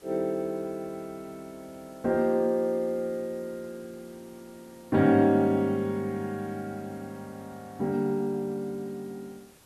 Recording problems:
background hiss; slope -3 dB per octave, SNR 27 dB

